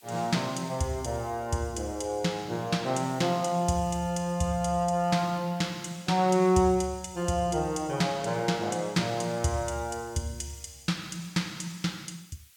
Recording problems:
background hiss; slope +4 dB per octave, SNR 28 dB

